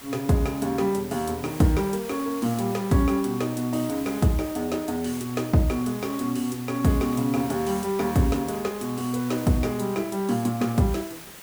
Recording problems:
hiss; slope -2 dB per octave, SNR 15 dB

